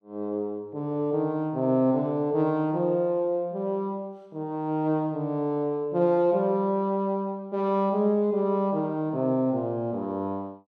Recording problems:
none

